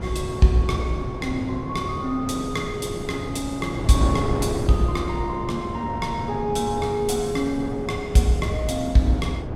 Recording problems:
wind noise; below 430 Hz, SNR 6 dB

